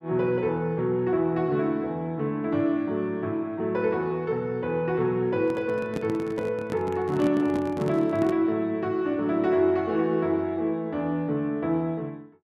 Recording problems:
microphone handling noise; from 5.5 to 8.5 s; peak -3 dB vs average level

